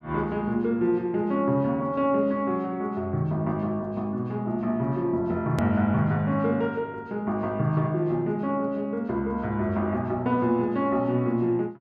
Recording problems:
edit click; at 5.5 s

